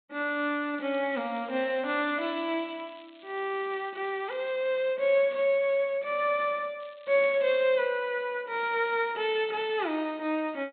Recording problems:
treble missing; nothing above 4 kHz
crackling; from 1 to 4.5 s and at 7 s; loose cable, SNR 26 dB

